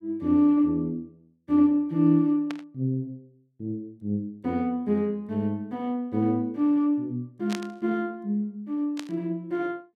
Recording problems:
burst of static; at 2.5 s, at 7.5 s and at 9 s; peak -6 dB vs average level

